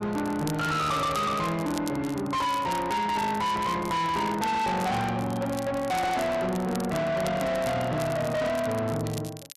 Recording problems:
distortion; soft clipping, signal-to-distortion ratio 7 dB
crackling; vinyl, SNR 17 dB

